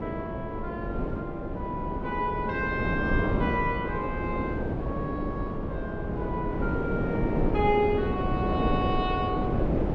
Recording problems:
wind noise; below 430 Hz, SNR -1 dB

